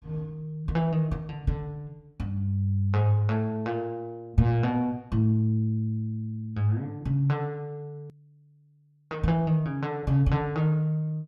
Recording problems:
edit click; at 8 s

